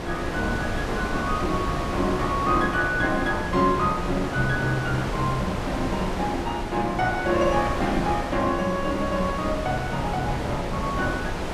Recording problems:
wind on the microphone; below 970 Hz, SNR 4 dB

